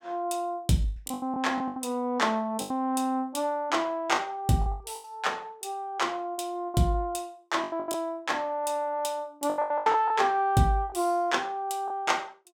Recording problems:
packet loss; 10% of the sound replaced, filled with the last packet

